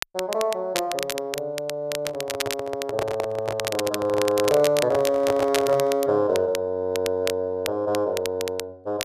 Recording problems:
crackle; vinyl, SNR 9 dB
microphone handling noise; from 2 to 6 s; peak +2 dB vs average level

